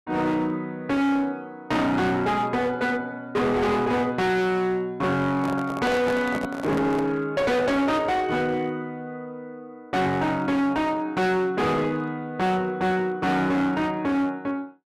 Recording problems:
distorted audio; hard clipping, signal-to-distortion ratio 7 dB
handling noise; from 5.5 to 7 s; peak -1 dB vs average level

